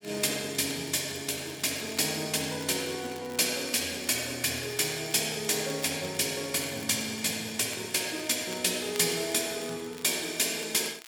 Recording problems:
crackling; vinyl, SNR 20 dB

